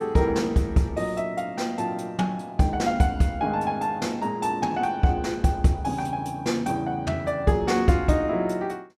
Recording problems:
none

